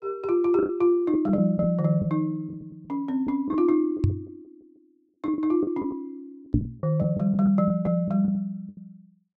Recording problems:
packet loss; 9% of the sound replaced, filled with the last packet
knock on the microphone; at 4 s and at 6.5 s; peak +6 dB vs average level

